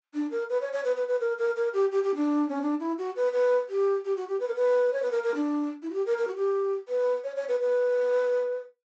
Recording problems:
low-pass filter; nothing above 8 kHz

